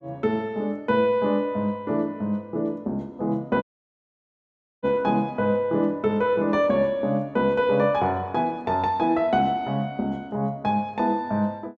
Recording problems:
audio cutting out; at 3.5 s for 1 s

